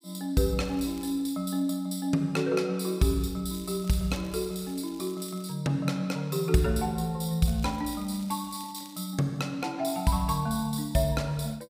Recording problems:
crackle; at 0.5 s, from 3.5 to 5.5 s and from 7.5 to 9 s; loose cable, SNR 23 dB

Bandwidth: 15.5 kHz